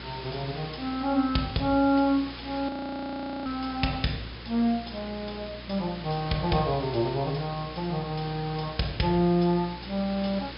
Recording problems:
low-pass filter; nothing above 5.2 kHz
hum; 60 Hz, harmonics up to 360 Hz, SNR 17 dB
background hiss; SNR 13 dB
audio freezing; at 2.5 s for 1 s

